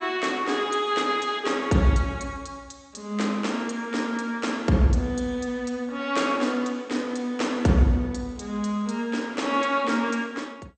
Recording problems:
lossy codec; MP2, log-spectral distance 2 dB, nothing above 8.5 kHz

